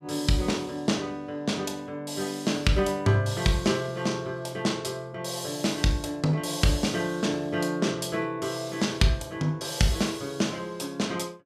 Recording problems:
none

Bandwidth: 14.5 kHz